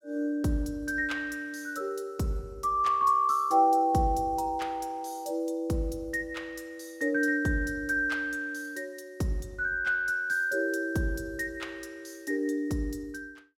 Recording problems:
none

